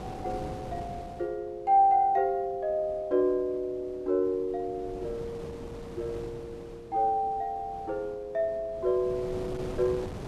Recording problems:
wind on the microphone; below 530 Hz, SNR 15 dB

